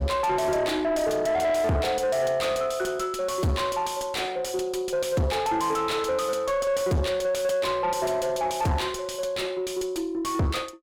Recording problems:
distorted audio; soft clipping, signal-to-distortion ratio 6 dB

